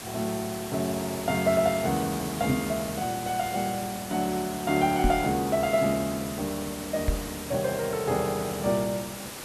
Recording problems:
hiss; slope -3 dB per octave, SNR 9 dB
microphone bump; at 2.5 s, at 5 s and at 7 s; peak +5 dB vs average level

